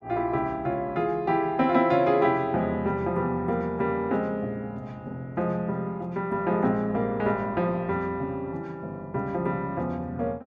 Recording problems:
none

